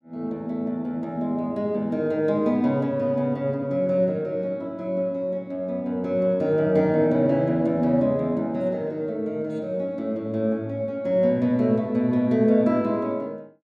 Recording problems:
none

